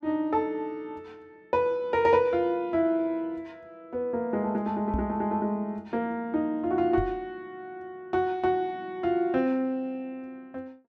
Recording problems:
knock on the microphone; at 5 s and at 7 s; peak 0 dB vs average level

